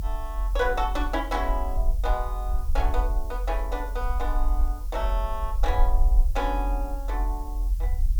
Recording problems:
hiss; slope +2 dB per octave, SNR 20 dB
rumble; below 46 Hz, SNR -3 dB

